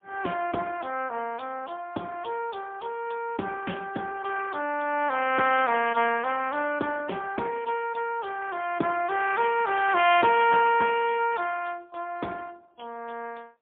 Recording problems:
phone line; 340 Hz to 3.3 kHz, AMR-NB, then MP3

